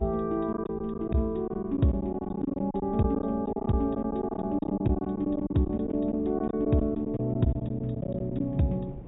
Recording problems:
treble cut off; nothing above 4 kHz
electrical hum; 60 Hz, harmonics up to 360 Hz, SNR 22 dB
wind on the microphone; below 270 Hz, SNR 17 dB
packet loss; 12% of the sound replaced, filled with silence

